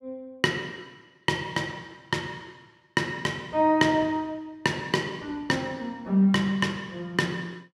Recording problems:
none

